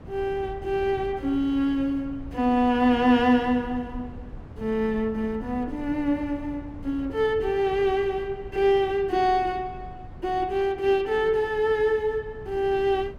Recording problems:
wind noise; below 160 Hz, SNR 18 dB

